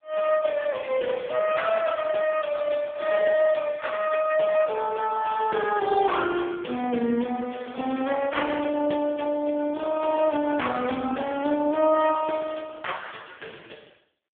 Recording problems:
phone line; 190 Hz to 3.3 kHz, AMR-NB

